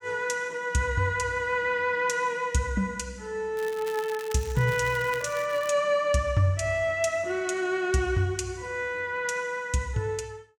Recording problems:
crackle; from 3.5 to 5.5 s; loose cable, SNR 17 dB

